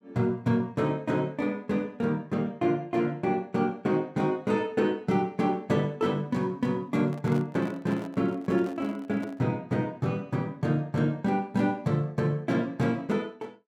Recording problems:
microphone handling noise; from 7 to 9.5 s; peak -10 dB vs average level

